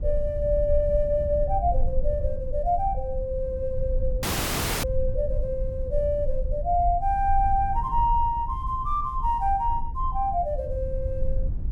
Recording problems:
rumble; below 56 Hz, strongest tone 18 Hz, SNR 5 dB
audio cutting out; at 4 s for 0.5 s

